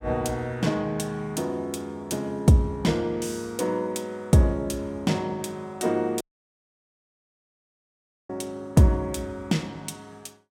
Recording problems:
audio cutting out; at 6 s for 2 s

